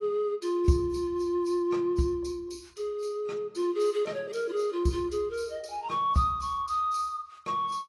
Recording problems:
lossy codec; AAC, log-spectral distance 2 dB, nothing above 11.3 kHz

